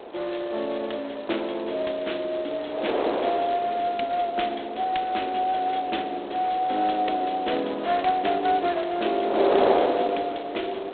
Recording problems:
telephone audio; 300 Hz to 3.9 kHz, G.726
wind on the microphone; below 790 Hz, SNR 5 dB

